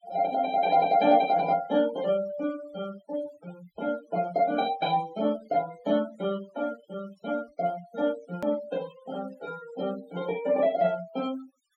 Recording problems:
denoising artefacts; signal-to-artefact ratio 19 dB
hard cut with a click; at 8.5 s

